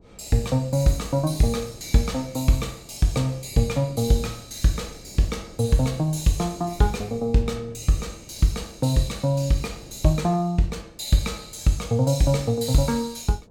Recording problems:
wind on the microphone; below 350 Hz, SNR 23 dB

